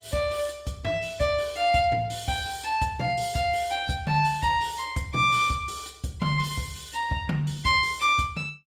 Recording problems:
lossy compression; Opus, log-spectral distance 4 dB

